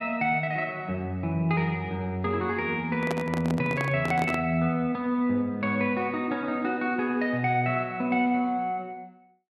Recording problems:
microphone handling noise; from 3 to 4.5 s; peak 0 dB vs average level

